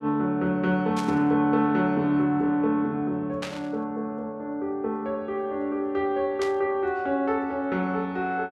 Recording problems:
static burst; at 1 s, at 3.5 s and at 6.5 s; peak -4 dB vs average level

